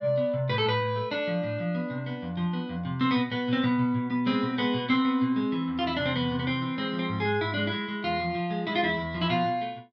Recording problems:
none

